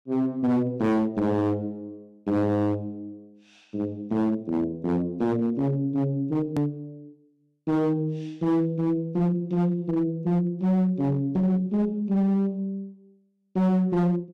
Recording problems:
distorted audio; hard clipping, signal-to-distortion ratio 10 dB
edit click; at 6.5 s

